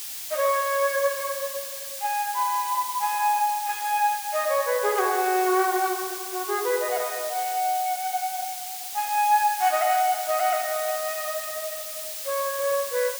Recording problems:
background hiss; slope +4 dB per octave, SNR 7 dB

